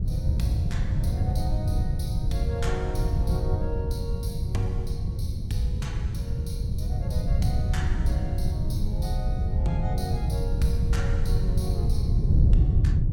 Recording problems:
wind noise; below 110 Hz, SNR -9 dB

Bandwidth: 17 kHz